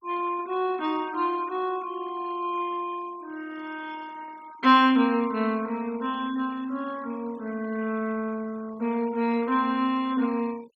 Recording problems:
noise reduction artefacts; signal-to-artefact ratio 22 dB

